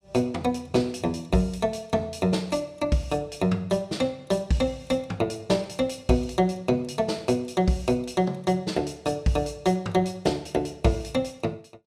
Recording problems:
none

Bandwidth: 14.5 kHz